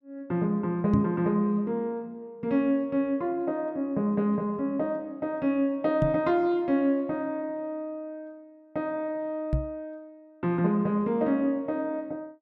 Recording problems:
microphone thump; at 1 s, at 6 s and at 9.5 s; peak +5 dB vs average level

